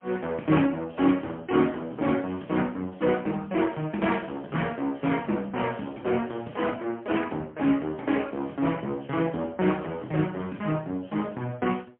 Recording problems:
phone line; 150 Hz to 3.3 kHz, AMR-NB, then MP3

